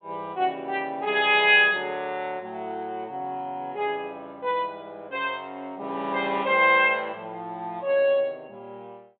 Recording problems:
treble missing; nothing above 4 kHz

